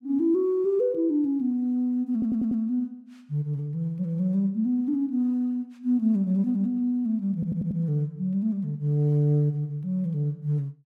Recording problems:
audio stuttering; at 2 s and at 7.5 s

